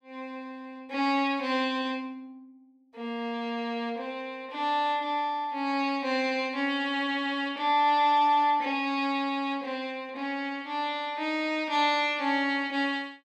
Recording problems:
none

